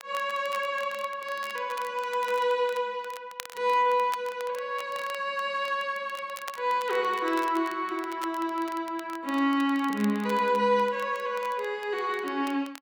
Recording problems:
crackling; vinyl, SNR 19 dB

